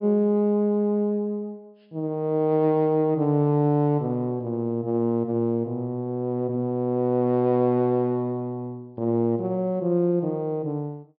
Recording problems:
treble cut off; nothing above 5.5 kHz

